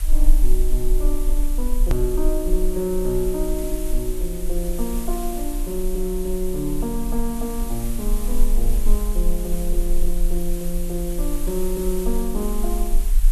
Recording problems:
background hiss; slope +1 dB per octave, SNR 9 dB
low-frequency rumble; below 34 Hz, strongest tone 20 Hz, SNR -1 dB
edit click; at 2 s

